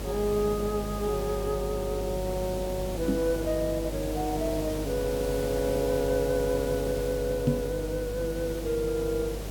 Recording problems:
hum; 50 Hz, harmonics up to 600 Hz, SNR 8 dB
background hiss; SNR 9 dB
microphone bump; at 3 s and at 7.5 s; peak +8 dB vs average level

